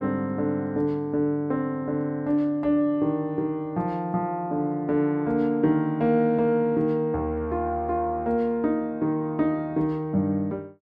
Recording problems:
none

